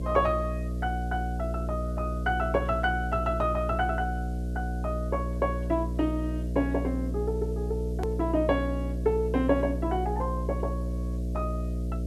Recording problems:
hum; 60 Hz, harmonics up to 660 Hz, SNR 2 dB
hiss; slope +5 dB per octave, SNR 28 dB
hard cut with a click; at 8 s

